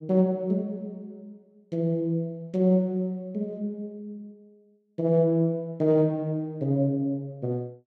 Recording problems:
none

